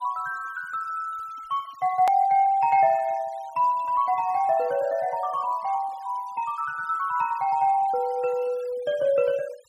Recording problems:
noise reduction artefacts; signal-to-artefact ratio 25 dB
edit click; at 2 s

